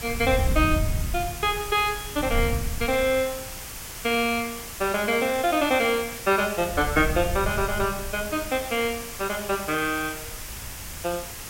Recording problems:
hiss; slope -1 dB per octave, SNR 10 dB
wind noise; below 100 Hz, SNR 7 dB

